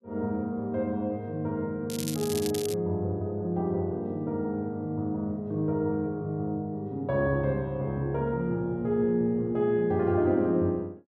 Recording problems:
crackle; at 2 s; loose cable, SNR 9 dB

